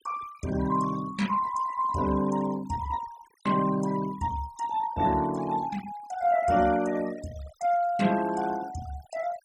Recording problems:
denoising artefacts; signal-to-artefact ratio 17 dB

